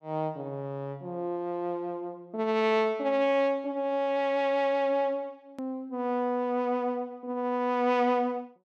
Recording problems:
click at an edit; at 5.5 s

